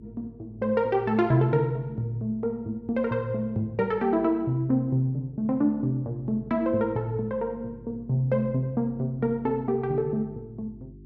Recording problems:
hum; 50 Hz, harmonics up to 400 Hz, SNR 23 dB

